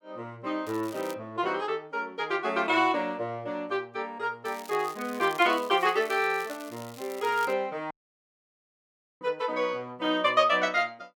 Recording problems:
crackling; at 0.5 s and from 4.5 to 7.5 s; loose cable, SNR 19 dB
dropout; at 8 s for 1.5 s

